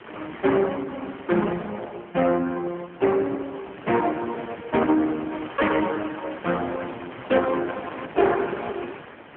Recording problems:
phone line; 190 Hz to 2.8 kHz, AMR-NB
wind on the microphone; below 2 kHz, SNR 15 dB

